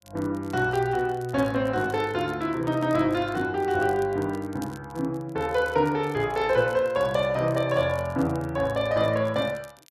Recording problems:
crackling; vinyl, SNR 26 dB

